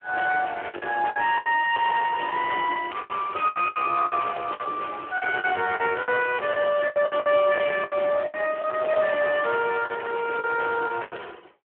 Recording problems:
telephone audio; 320 Hz to 3.1 kHz, Speex
distorted audio; soft clipping, signal-to-distortion ratio 10 dB
packet loss; 13% of the sound replaced, filled with the last packet

